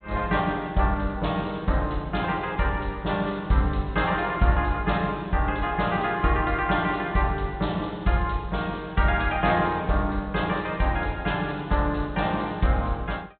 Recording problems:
treble missing; nothing above 4 kHz

